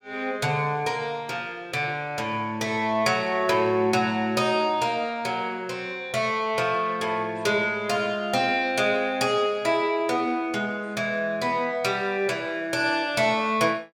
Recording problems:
none

